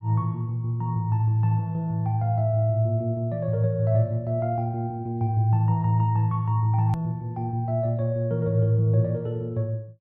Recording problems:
hard cut with a click; at 7 s

